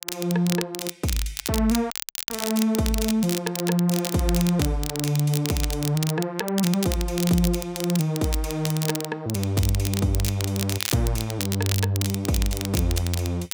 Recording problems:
crackling; vinyl, SNR 7 dB
audio cutting out; at 2 s

